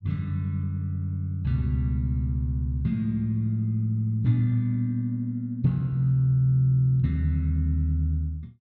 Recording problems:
none

